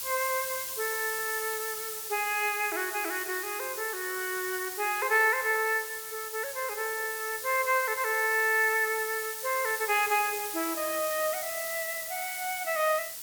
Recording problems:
background hiss; slope +2 dB per octave, SNR 6 dB

